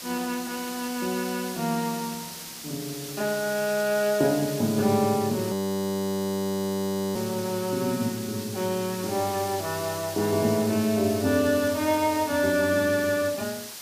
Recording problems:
background hiss; slope +1 dB per octave, SNR 10 dB
frozen audio; at 5.5 s for 1.5 s

